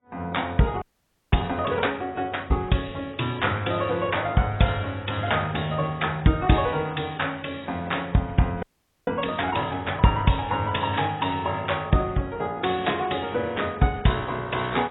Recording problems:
lossy compression; AAC, log-spectral distance 5 dB, nothing above 3.8 kHz
audio freezing; at 1 s for 0.5 s and at 8.5 s

